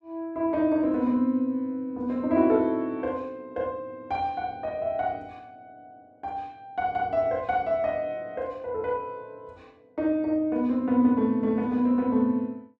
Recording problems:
none

